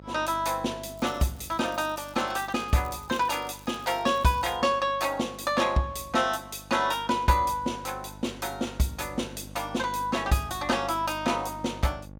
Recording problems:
hum; 50 Hz, harmonics up to 1.1 kHz, SNR 19 dB
crackle; from 1 to 4.5 s; loose cable, SNR 25 dB

